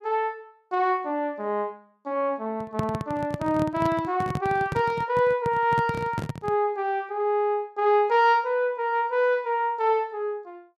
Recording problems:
handling noise; from 2.5 to 6.5 s; peak +1 dB vs average level

